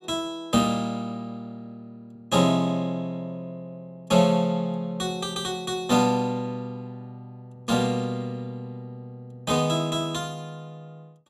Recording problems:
none

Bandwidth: 14.5 kHz